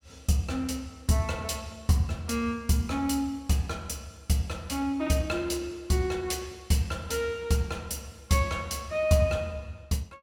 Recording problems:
none

